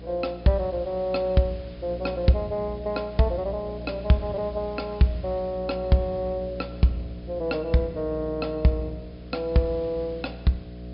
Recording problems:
treble missing; nothing above 5.5 kHz
hum; 60 Hz, harmonics up to 720 Hz, SNR 13 dB
hiss; SNR 27 dB

